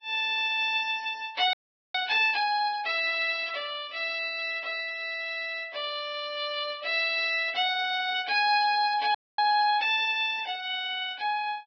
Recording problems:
codec artefacts; Vorbis, log-spectral distance 4 dB, nothing above 5.3 kHz
audio freezing; at 1.5 s and at 9 s

